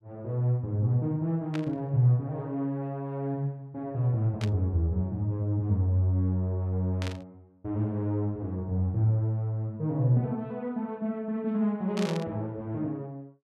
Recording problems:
burst of static; 4 times, first at 1.5 s; peak -5 dB vs average level

